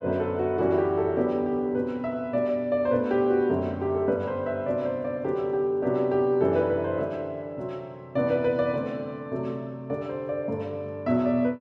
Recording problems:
none

